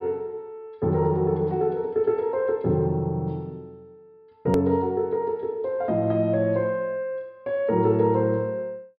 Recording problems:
treble missing; nothing above 5.3 kHz
hard cut with a click; at 4.5 s

